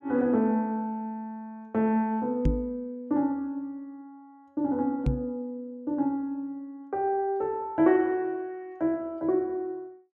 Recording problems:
microphone thump; at 2.5 s and at 5 s; peak +6 dB vs average level

